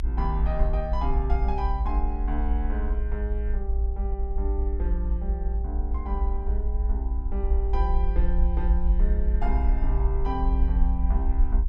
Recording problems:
rumble; below 56 Hz, SNR -7 dB

